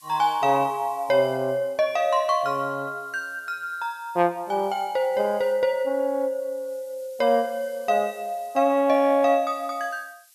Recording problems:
background hiss; slope +7 dB per octave, SNR 27 dB

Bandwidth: 13.5 kHz